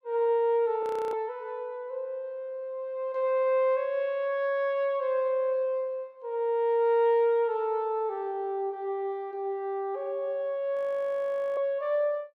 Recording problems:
audio freezing; at 1 s and at 11 s for 1 s

